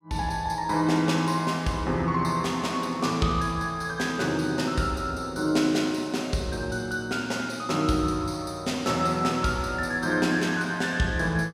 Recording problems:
none

